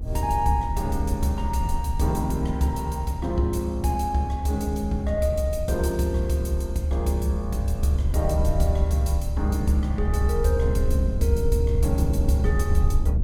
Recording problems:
rumble; below 72 Hz, SNR 1 dB

